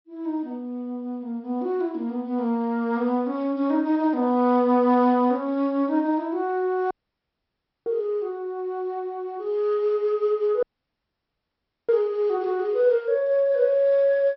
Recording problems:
treble cut off; nothing above 5.5 kHz
dropout; at 7 s for 1 s and at 11 s for 1.5 s

